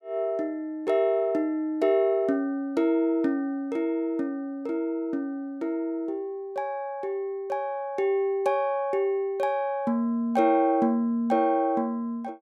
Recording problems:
none

